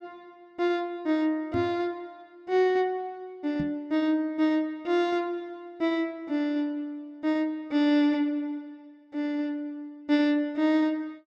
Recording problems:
knock on the microphone; at 1.5 s and at 3.5 s; peak -1 dB vs average level

